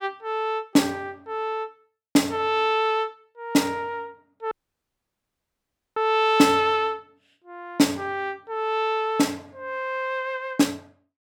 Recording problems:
dropout; at 4.5 s for 1.5 s

